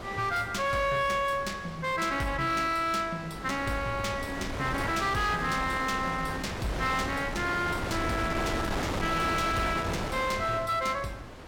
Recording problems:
distortion; hard clipping, signal-to-distortion ratio 11 dB
wind on the microphone; below 1.4 kHz, SNR 6 dB

